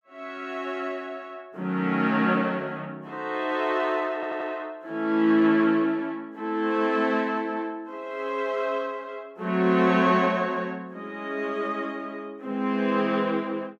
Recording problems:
stutter; at 4 s

